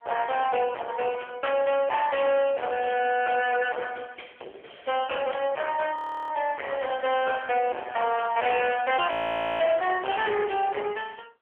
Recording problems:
telephone audio; 340 Hz to 3.1 kHz, AMR-NB
distortion; soft clipping, signal-to-distortion ratio 5 dB
audio freezing; at 6 s and at 9 s

